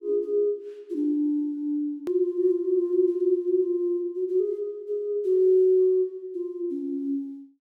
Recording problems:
edit click; at 2 s

